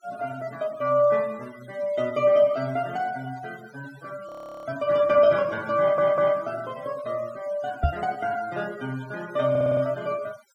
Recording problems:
noise reduction artefacts; signal-to-artefact ratio 23 dB
audio freezing; at 4.5 s
audio stuttering; at 6 s and at 9.5 s
knock on the microphone; at 8 s; peak +4 dB vs average level

